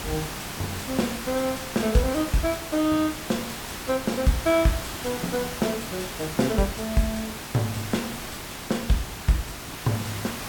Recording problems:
hiss; slope -2 dB per octave, SNR 7 dB

